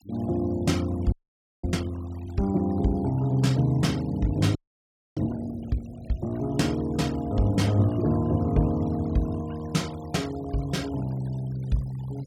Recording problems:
denoising artefacts; signal-to-artefact ratio 22 dB
audio freezing; at 1 s for 0.5 s and at 4.5 s for 0.5 s

